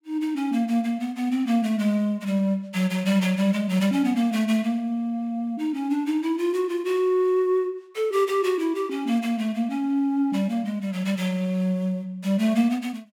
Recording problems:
none

